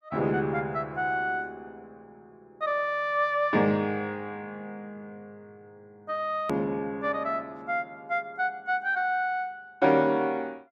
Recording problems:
click at an edit; at 6.5 s

